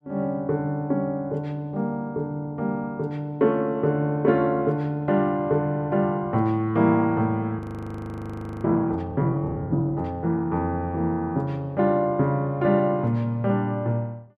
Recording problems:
frozen audio; at 7.5 s for 1 s

